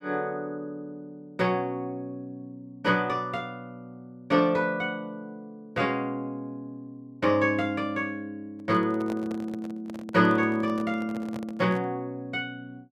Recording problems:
microphone handling noise; from 8.5 to 12 s; peak -6 dB vs average level

